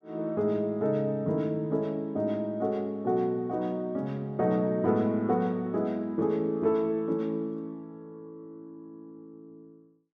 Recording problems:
none

